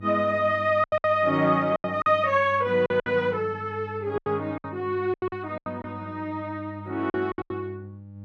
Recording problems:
hum; 50 Hz, harmonics up to 600 Hz, SNR 16 dB
packet loss; 11% of the sound replaced, filled with silence

